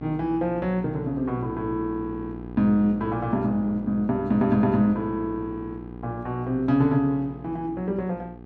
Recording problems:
hum; 60 Hz, harmonics up to 1.3 kHz, SNR 14 dB

